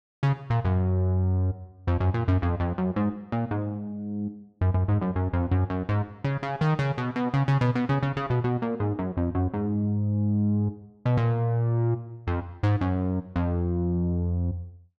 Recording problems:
none

